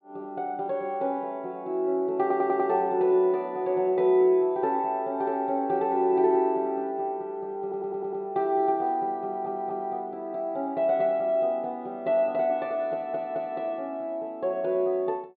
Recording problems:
treble cut off; nothing above 4.6 kHz
audio stuttering; 4 times, first at 2 s

